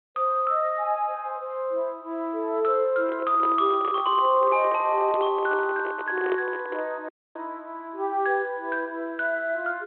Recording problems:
phone line; 280 Hz to 3.3 kHz, G.726
handling noise; from 3 to 7 s; peak -2 dB vs average level
dropout; at 7 s

